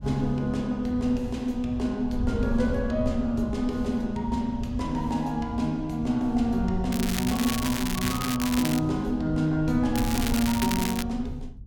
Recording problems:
rumble; below 90 Hz, SNR 12 dB
crackle; from 7 to 9 s and from 10 to 11 s; loose cable, SNR 6 dB

